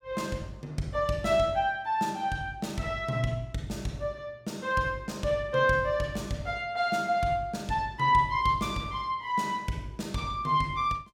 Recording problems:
none

